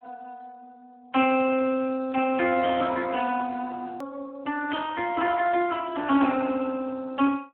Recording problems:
telephone audio; 190 Hz to 3.1 kHz, Speex
click at an edit; at 4 s

